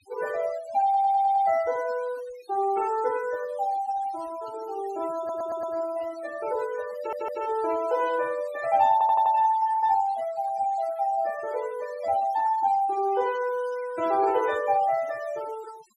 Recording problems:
denoising artefacts; signal-to-artefact ratio 18 dB
stutter; 4 times, first at 1 s

